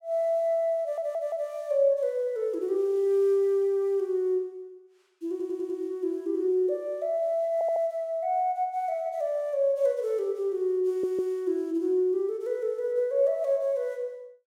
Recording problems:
stutter; 4 times, first at 1 s

